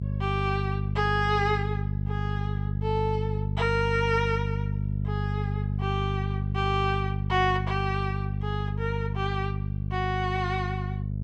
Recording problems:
hum; 50 Hz, harmonics up to 400 Hz, SNR 0 dB

